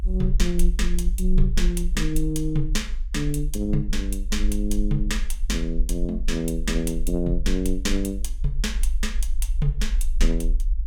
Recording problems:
rumble; below 48 Hz, strongest tone 20 Hz, SNR 1 dB

